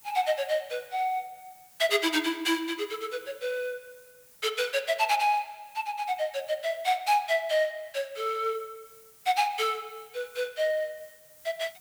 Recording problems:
background hiss; slope 0 dB per octave, SNR 24 dB

